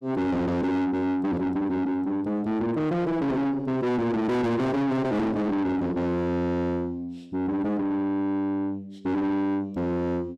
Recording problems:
distortion; soft clipping, signal-to-distortion ratio 6 dB

